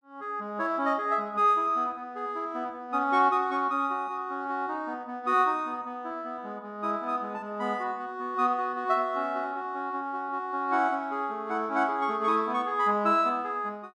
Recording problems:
none

